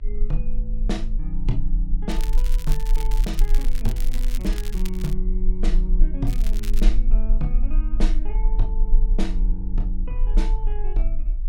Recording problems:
electrical hum; 50 Hz, harmonics up to 600 Hz, SNR 21 dB
low-frequency rumble; below 34 Hz, strongest tone 26 Hz, SNR -7 dB
crackling; from 2 to 5 s and at 6.5 s; loose cable, SNR 8 dB

